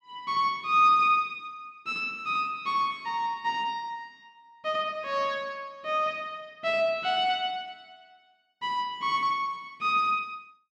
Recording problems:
none

